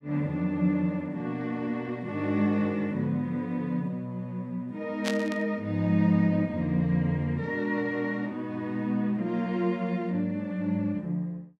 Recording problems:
burst of static; at 5 s; peak +1 dB vs average level

